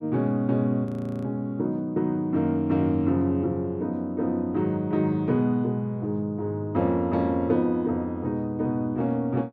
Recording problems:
frozen audio; at 1 s

